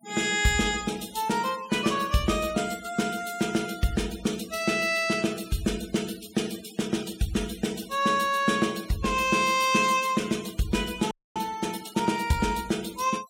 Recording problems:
noise reduction artefacts; signal-to-artefact ratio 17 dB
frozen audio; at 11 s

